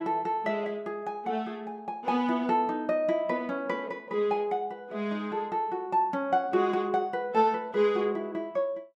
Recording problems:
none

